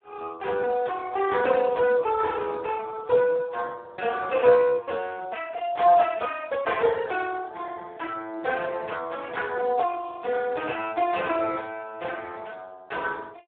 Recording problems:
phone line; 190 Hz to 2.6 kHz, Speex

